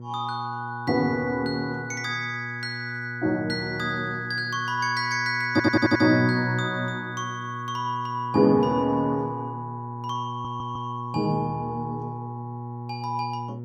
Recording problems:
electrical hum; 60 Hz, harmonics up to 600 Hz, SNR 12 dB
audio stuttering; at 5.5 s and at 10 s

